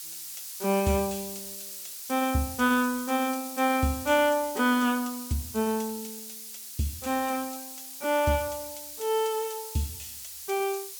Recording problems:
hiss; slope +5 dB per octave, SNR 10 dB

